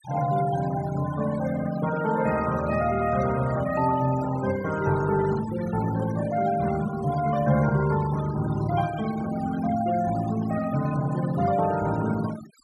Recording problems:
denoising artefacts; signal-to-artefact ratio 15 dB

